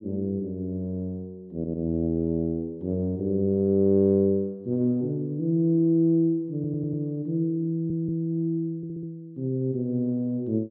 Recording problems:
audio stuttering; 4 times, first at 1.5 s

